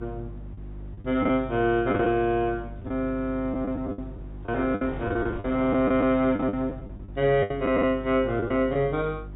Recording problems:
treble cut off; nothing above 4 kHz
hum; 50 Hz, harmonics up to 350 Hz, SNR 15 dB
wind on the microphone; below 640 Hz, SNR 22 dB
packet loss; 9% of the sound replaced, filled with the last packet

